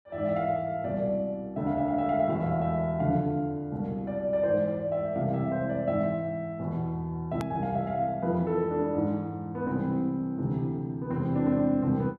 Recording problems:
edit click; at 7.5 s

